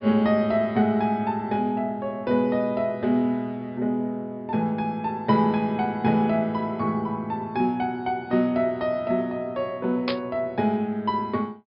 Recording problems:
treble missing; nothing above 5.5 kHz
burst of static; at 10 s; peak 0 dB vs average level

